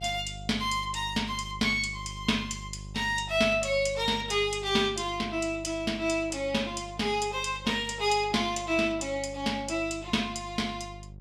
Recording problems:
hum; 50 Hz, harmonics up to 550 Hz, SNR 16 dB

